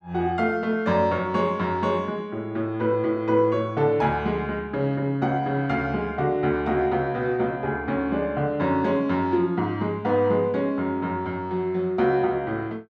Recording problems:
none

